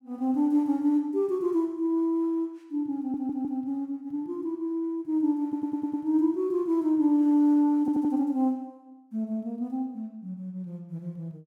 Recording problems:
stutter; at 3 s, at 5.5 s and at 8 s

